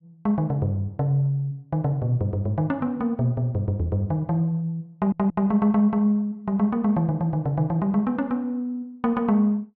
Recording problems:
audio stuttering; at 5 s

